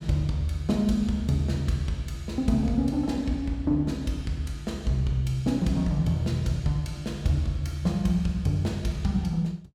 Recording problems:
none

